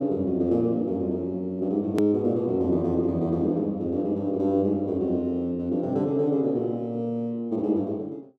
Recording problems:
hard cut with a click; at 2 s

